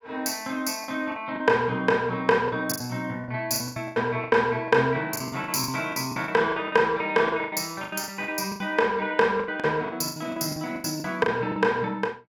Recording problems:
packet loss; 15% of the sound replaced, filled with the last packet

